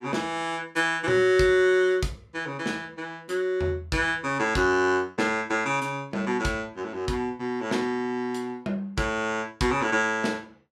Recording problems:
none

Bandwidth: 15 kHz